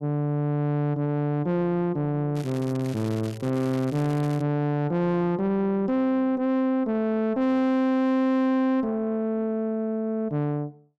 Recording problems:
distorted audio; soft clipping, signal-to-distortion ratio 7 dB
crackling; from 2.5 to 4.5 s; loose cable, SNR 20 dB

